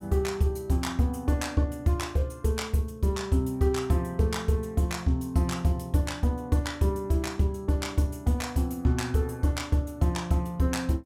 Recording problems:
none

